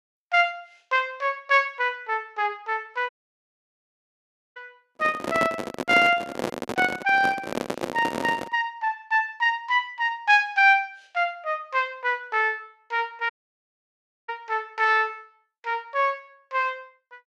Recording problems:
audio cutting out; at 3 s for 1.5 s and at 13 s for 1 s
handling noise; from 5 to 8.5 s; peak +1 dB vs average level

